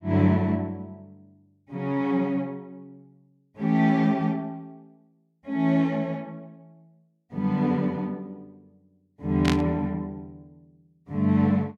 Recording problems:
static burst; at 9.5 s; peak +2 dB vs average level

